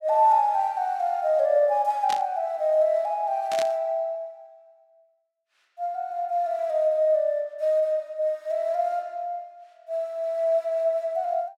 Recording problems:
static burst; at 2 s and at 3.5 s; peak -5 dB vs average level

